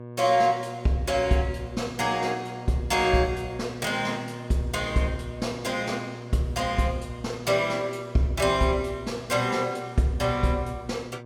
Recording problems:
electrical hum; 60 Hz, harmonics up to 1.2 kHz, SNR 14 dB

